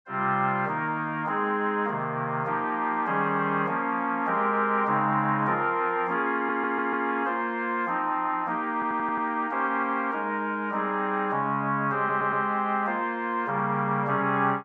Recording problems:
audio stuttering; at 6.5 s, at 8.5 s and at 12 s

